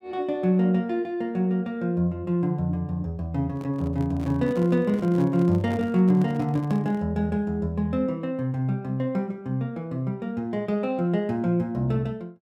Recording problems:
handling noise; from 3.5 to 7 s; peak -8 dB vs average level

